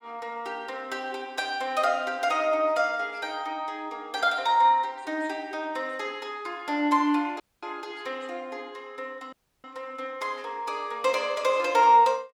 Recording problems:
audio cutting out; at 7.5 s and at 9.5 s

